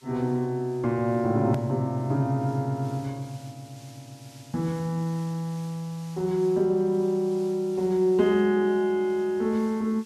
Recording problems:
background hiss; slope +3 dB per octave, SNR 26 dB
click at an edit; at 1.5 s

